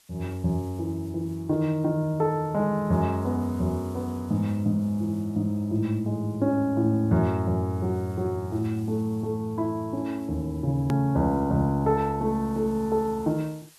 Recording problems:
background hiss; slope +1 dB per octave, SNR 28 dB
click at an edit; at 11 s

